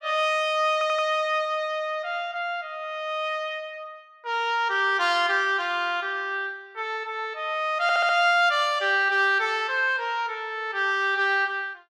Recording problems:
stutter; at 0.5 s and at 8 s

